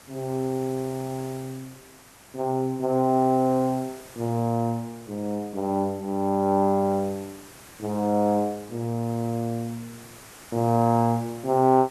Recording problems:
hiss; slope -3 dB per octave, SNR 21 dB

